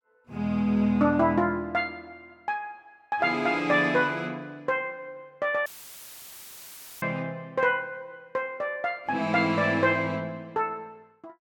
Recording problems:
audio cutting out; at 5.5 s for 1.5 s; filled with static

